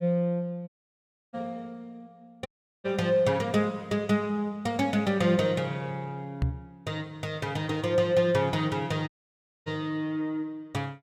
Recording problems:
dropout; at 0.5 s for 0.5 s, at 2.5 s and at 9 s for 0.5 s
microphone thump; at 6.5 s; peak +5 dB vs average level

